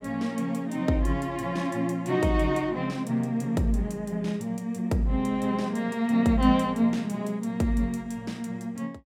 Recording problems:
none

